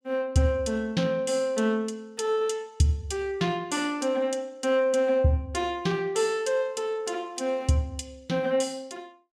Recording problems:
none

